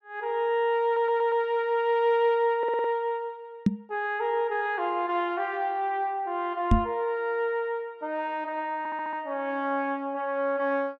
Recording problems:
stutter; at 1 s, at 2.5 s and at 9 s
microphone bump; at 3.5 s and at 6.5 s; peak +9 dB vs average level

